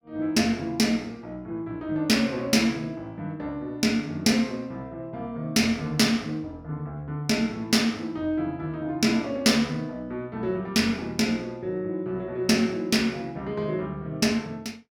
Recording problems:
none

